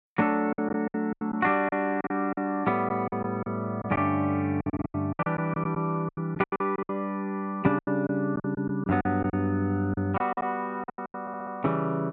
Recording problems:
packet loss; 14% of the sound replaced, filled with silence
audio stuttering; at 11 s

